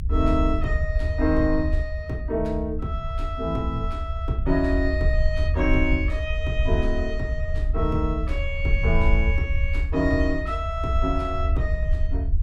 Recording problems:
low-frequency rumble; below 76 Hz, SNR 0 dB

